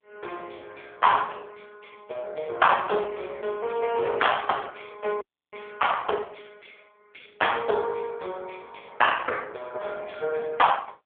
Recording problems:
phone line; 340 Hz to 3.4 kHz, AMR-NB
dropout; at 5 s

